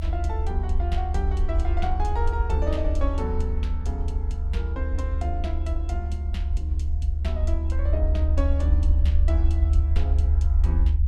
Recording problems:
rumble; below 74 Hz, SNR -9 dB

